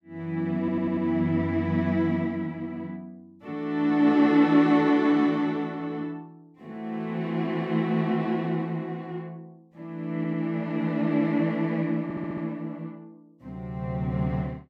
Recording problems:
stutter; at 0.5 s, at 10 s and at 12 s

